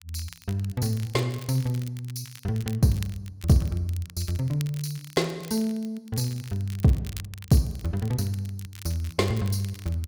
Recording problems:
crackle; vinyl, SNR 19 dB

